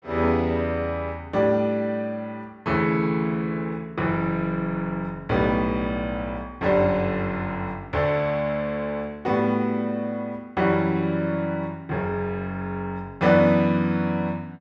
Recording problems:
none

